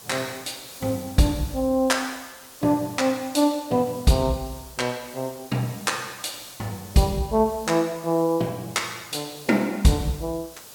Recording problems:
hiss; SNR 18 dB

